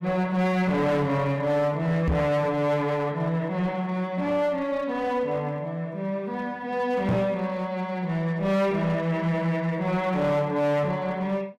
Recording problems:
distorted audio; hard clipping, uneven, signal-to-distortion ratio 10 dB
microphone thump; at 2 s and at 7 s; peak +4 dB vs average level

